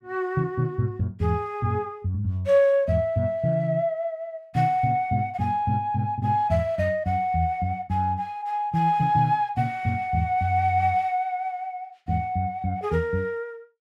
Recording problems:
none

